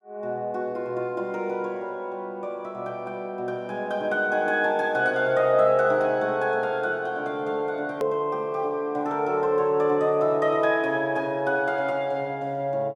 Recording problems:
hard cut with a click; at 8 s

